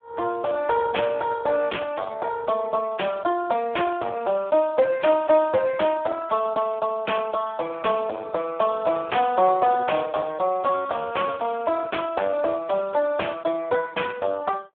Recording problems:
phone line; 240 Hz to 2.3 kHz, Speex
distortion; soft clipping, signal-to-distortion ratio 11 dB

